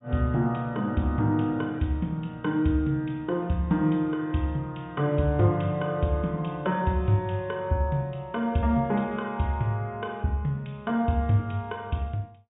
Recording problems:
low-pass filter; nothing above 4 kHz

